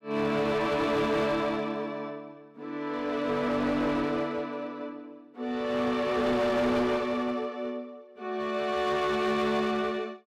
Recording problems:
distortion; hard clipping, uneven, signal-to-distortion ratio 9 dB

